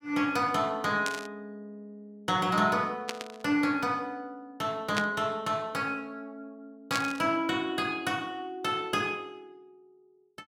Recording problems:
burst of static; 4 times, first at 1 s; peak +3 dB vs average level

